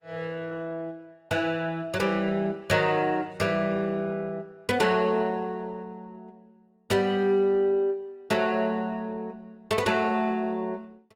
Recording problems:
lossy compression; Opus, log-spectral distance 2 dB, nothing above 18.9 kHz

